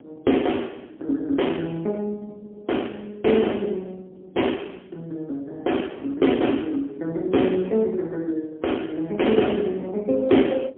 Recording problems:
phone line; 240 Hz to 3.3 kHz, AMR-NB, then MP3
wind on the microphone; below 420 Hz, SNR 21 dB

